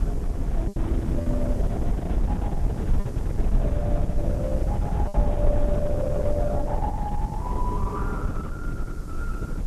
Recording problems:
lossy codec; Opus, log-spectral distance 2 dB
electrical hum; 50 Hz, harmonics up to 1.6 kHz, SNR 18 dB
hiss; SNR 20 dB
wind on the microphone; below 92 Hz, SNR -5 dB
packet loss; 2% of the sound replaced, filled with repeated pitch periods

